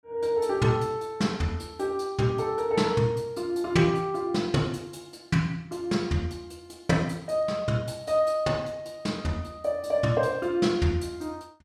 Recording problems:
none

